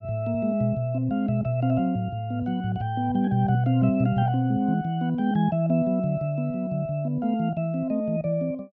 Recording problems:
none

